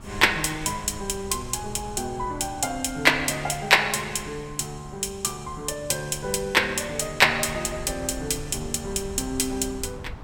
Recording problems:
wind on the microphone; below 170 Hz, SNR 17 dB

